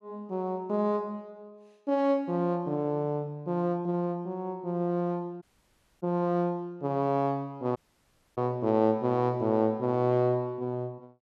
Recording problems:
dropout; at 5.5 s for 0.5 s and at 8 s for 0.5 s

